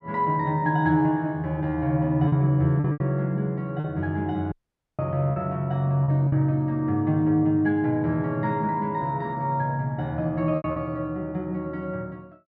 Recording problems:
lost packets; 4% of the sound replaced, filled with repeated pitch periods
audio cutting out; at 4.5 s

